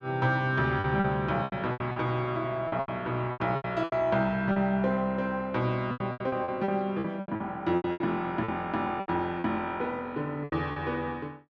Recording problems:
packet loss; 14% of the sound replaced, filled with repeated pitch periods

